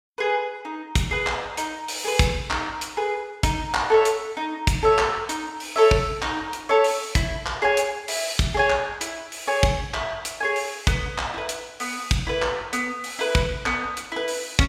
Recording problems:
none

